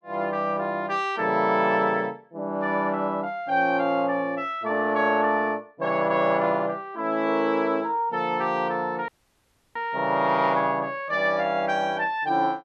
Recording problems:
audio cutting out; at 9 s for 0.5 s

